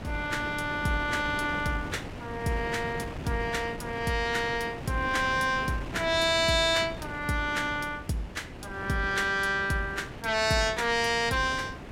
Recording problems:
wind noise; below 740 Hz, SNR 11 dB

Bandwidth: 16 kHz